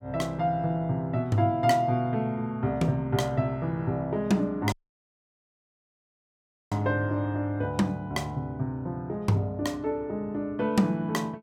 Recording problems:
audio cutting out; at 4.5 s for 2 s

